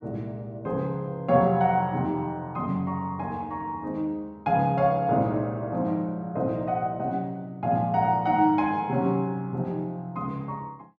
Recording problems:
none

